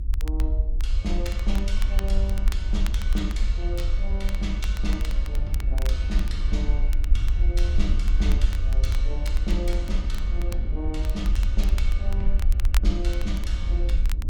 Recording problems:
rumble; below 52 Hz, SNR -8 dB
wind noise; below 220 Hz, SNR 9 dB
crackling; vinyl, SNR 10 dB

